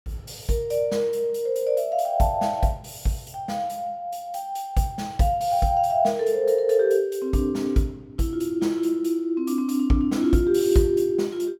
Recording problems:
none

